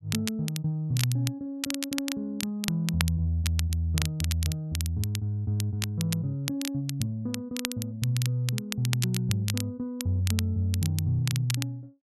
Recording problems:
crackling; vinyl, SNR 7 dB

